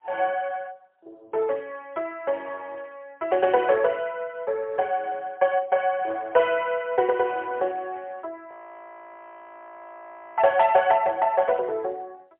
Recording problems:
phone line; 340 Hz to 3.3 kHz, AMR-NB, then MP3
audio freezing; at 8.5 s for 2 s

